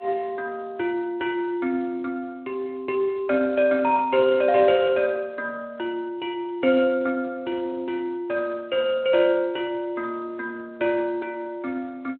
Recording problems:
telephone audio; 240 Hz to 3.2 kHz, Speex

